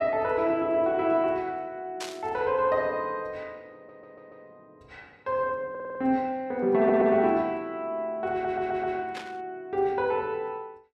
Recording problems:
burst of static; at 2 s and at 9 s; peak -5 dB vs average level
stutter; 4 times, first at 4 s

